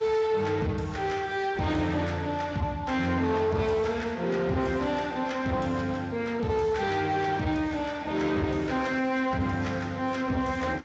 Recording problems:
codec artefacts; Speex, then Vorbis, log-spectral distance 3 dB
distorted audio; soft clipping, signal-to-distortion ratio 11 dB

